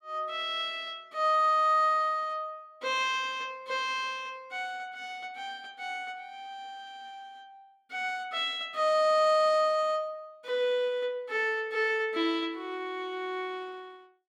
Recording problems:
none

